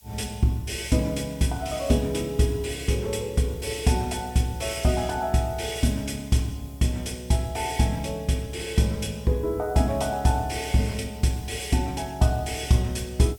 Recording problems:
background hiss; SNR 25 dB

